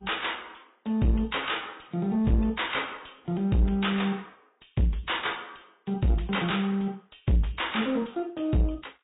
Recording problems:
treble missing; nothing above 3.8 kHz
codec artefacts; MP3, then Vorbis, log-spectral distance 5 dB
distorted audio; soft clipping, signal-to-distortion ratio 8 dB

